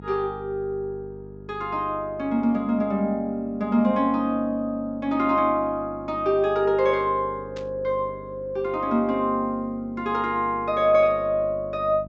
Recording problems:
treble cut off; nothing above 8 kHz
hum; 50 Hz, harmonics up to 700 Hz, SNR 19 dB
burst of static; at 7.5 s; peak -14 dB vs average level

